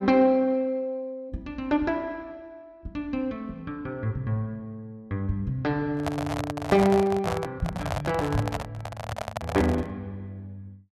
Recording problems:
handling noise; from 6 to 10 s; peak +2 dB vs average level

